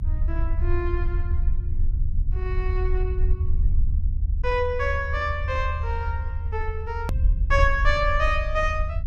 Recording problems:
low-frequency rumble; below 76 Hz, SNR -1 dB
edit click; at 7 s

